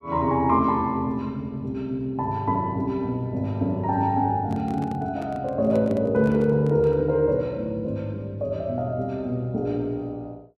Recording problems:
microphone handling noise; from 4.5 to 7 s; peak -8 dB vs average level

